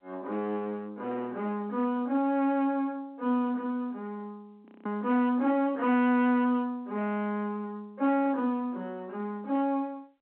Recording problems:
phone line; 220 Hz to 3.2 kHz, G.711
distortion; hard clipping, signal-to-distortion ratio 13 dB
frozen audio; at 4.5 s

